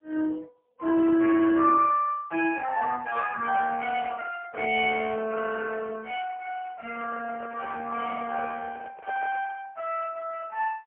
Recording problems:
telephone audio; 260 Hz to 2.9 kHz, AMR-NB, then MP3
microphone handling noise; from 7 to 9.5 s; peak -8 dB vs average level

